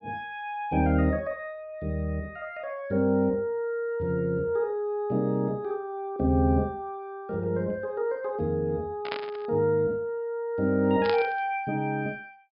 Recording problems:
low-pass filter; nothing above 5.5 kHz
static burst; at 9 s and at 11 s; peak -1 dB vs average level

